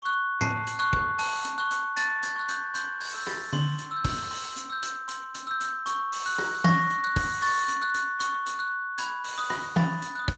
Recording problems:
codec artefacts; Speex, log-spectral distance 6 dB, nothing above 7.3 kHz

